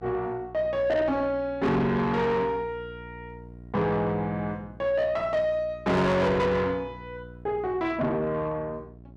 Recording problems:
distortion; soft clipping, signal-to-distortion ratio 7 dB
hum; 60 Hz, harmonics up to 720 Hz, SNR 19 dB

